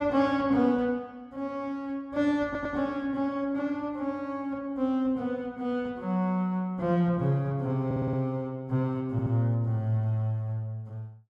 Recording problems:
stutter; at 2.5 s, at 8 s and at 9 s

